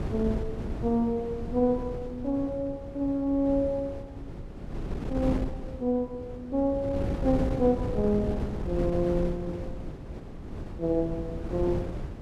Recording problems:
wind noise; below 280 Hz, SNR 7 dB

